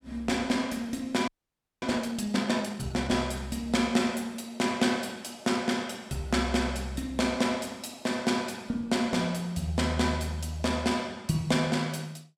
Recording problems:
audio freezing; at 1.5 s for 0.5 s

